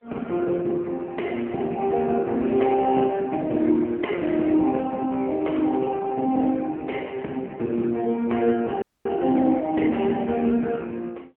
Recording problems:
telephone audio; 190 Hz to 3.4 kHz, AMR-NB
frozen audio; at 9 s

